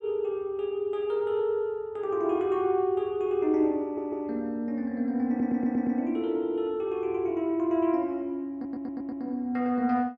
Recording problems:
audio stuttering; at 4 s, at 5.5 s and at 8.5 s

